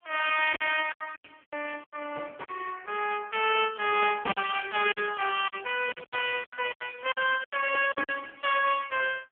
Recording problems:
telephone audio; 370 Hz to 3.3 kHz, AMR-NB
packet loss; 10% of the sound replaced, filled with silence

